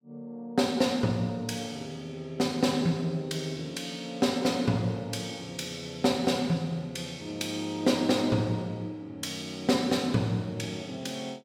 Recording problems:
none

